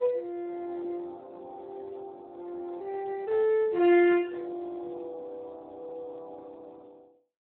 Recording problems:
phone line; 300 Hz to 3.5 kHz, Speex

